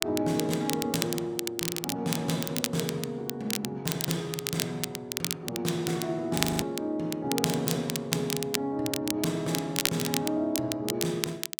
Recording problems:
crackling; vinyl, SNR 2 dB
frozen audio; at 6.5 s

